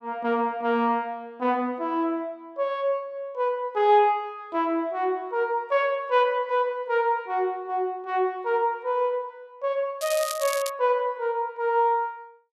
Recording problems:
crackling; at 10 s; loose cable, SNR 9 dB

